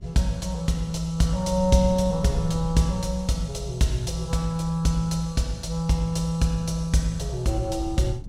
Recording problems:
wind noise; below 120 Hz, SNR 15 dB

